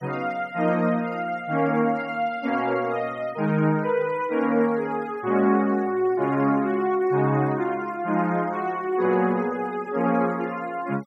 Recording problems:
noise reduction artefacts; signal-to-artefact ratio 24 dB

